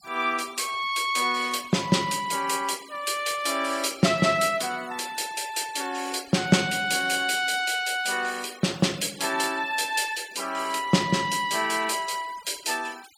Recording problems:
denoising artefacts; signal-to-artefact ratio 19 dB

